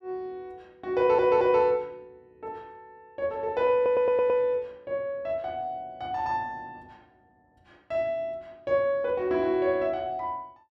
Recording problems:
stutter; at 1 s and at 4 s

